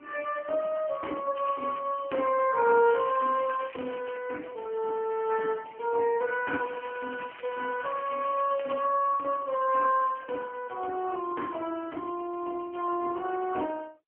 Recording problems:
phone line; 240 Hz to 2.8 kHz, AMR-NB
crackling; at 1.5 s, from 3 to 4 s and from 6.5 to 9 s; loose cable, SNR 19 dB

